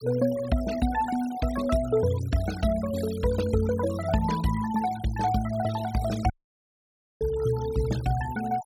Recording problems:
denoising artefacts; signal-to-artefact ratio 15 dB
dropout; at 6.5 s for 1 s

